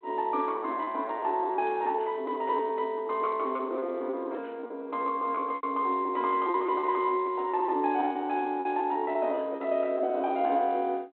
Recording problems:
phone line; 240 Hz to 3.3 kHz, G.726
lost packets; 15% of the sound replaced, filled with repeated pitch periods

